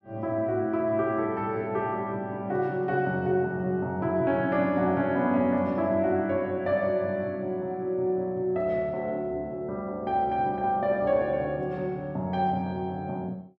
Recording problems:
none

